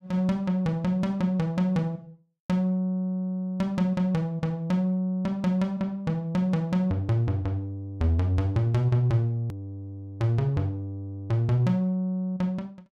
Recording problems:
edit click; at 9.5 s

